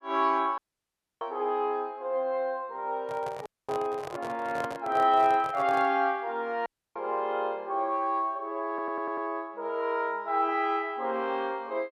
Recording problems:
audio cutting out; at 0.5 s for 0.5 s, at 3.5 s and at 6.5 s
microphone handling noise; from 3 to 6 s; peak -5 dB vs average level
stutter; at 8.5 s

